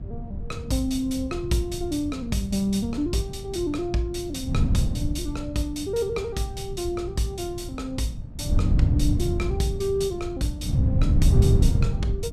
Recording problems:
hum; 60 Hz, harmonics up to 1.3 kHz, SNR 25 dB
wind noise; below 130 Hz, SNR -1 dB

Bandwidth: 14.5 kHz